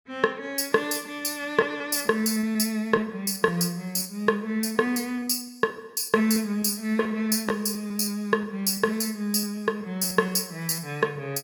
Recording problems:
packet loss; 7% of the sound replaced, filled with repeated pitch periods

